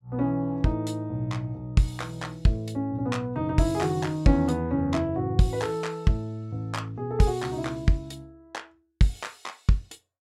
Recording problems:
none

